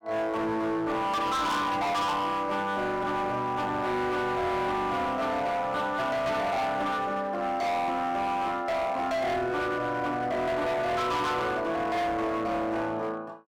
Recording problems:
distortion; hard clipping, signal-to-distortion ratio 8 dB

